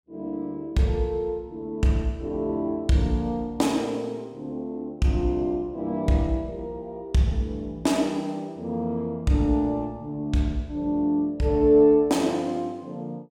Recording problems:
none

